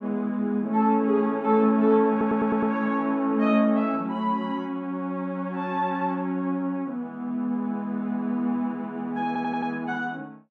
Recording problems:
audio stuttering; at 2 s and at 9.5 s

